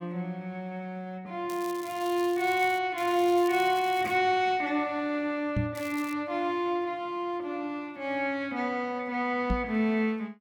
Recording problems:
crackle; from 1.5 to 3 s, from 3 to 4 s and at 6 s; loose cable, SNR 18 dB
knock on the microphone; at 5.5 s and at 9.5 s; peak +2 dB vs average level

